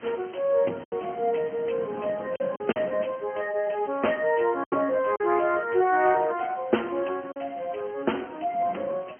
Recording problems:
telephone audio; 260 Hz to 3.2 kHz, Speex
background hiss; SNR 26 dB
wind on the microphone; below 600 Hz, SNR 19 dB
packet loss; 4% of the sound replaced, filled with silence

